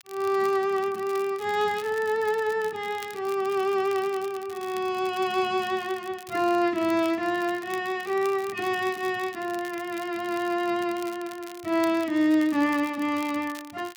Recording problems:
crackle; vinyl, SNR 20 dB

